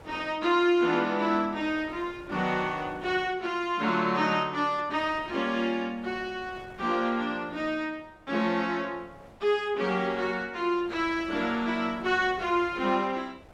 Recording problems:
wind noise; below 910 Hz, SNR 24 dB

